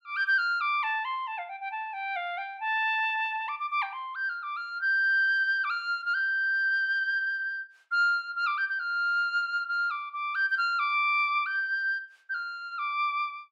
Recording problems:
none

